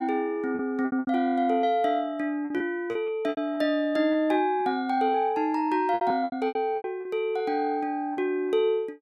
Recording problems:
lost packets; 10% of the sound replaced, filled with repeated pitch periods

